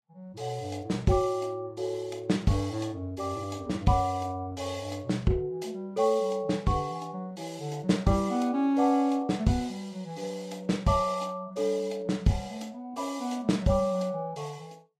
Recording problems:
lossy codec; Vorbis, log-spectral distance 2 dB, nothing above 12.3 kHz

